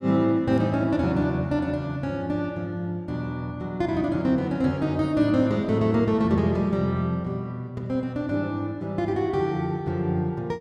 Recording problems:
none

